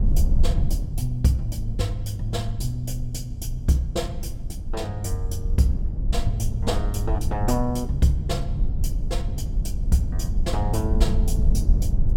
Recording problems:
low-frequency rumble; below 70 Hz, SNR 0 dB

